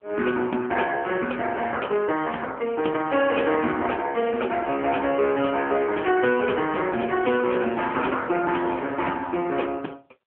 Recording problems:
phone line; 260 Hz to 3.3 kHz, AMR-NB

